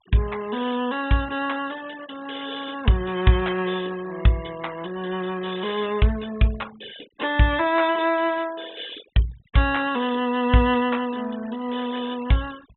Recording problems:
treble missing; nothing above 3.7 kHz
noise reduction artefacts; signal-to-artefact ratio 20 dB

